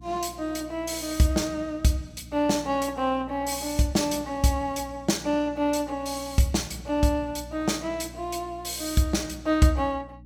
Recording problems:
mains hum; 60 Hz, harmonics up to 300 Hz, SNR 20 dB

